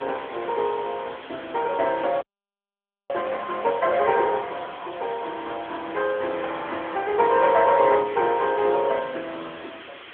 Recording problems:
phone line; 280 Hz to 3.4 kHz, AMR-NB
hiss; SNR 18 dB
audio freezing; at 2 s for 1 s
burst of static; at 7.5 s; peak -9 dB vs average level

